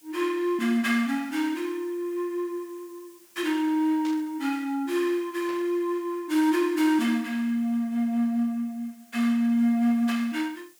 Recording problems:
background hiss; SNR 29 dB
static burst; at 4 s, at 5.5 s and at 10 s; peak -12 dB vs average level

